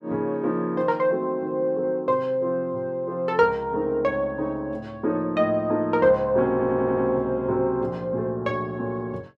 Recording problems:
audio stuttering; at 6.5 s

